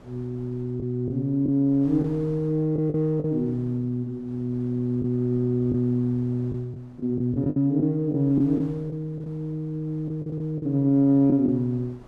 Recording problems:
wind noise; below 590 Hz, SNR 25 dB
packet loss; 6% of the sound replaced, filled with the last packet

